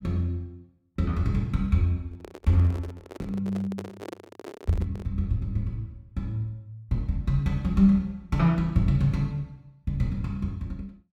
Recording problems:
microphone handling noise; from 2 to 5 s; peak -6 dB vs average level

